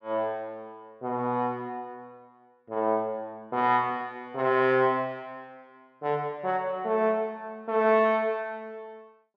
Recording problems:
none

